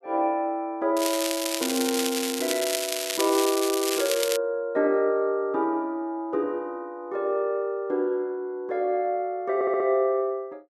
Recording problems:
crackle; from 1 to 4.5 s; loose cable, SNR 3 dB
stutter; at 9.5 s

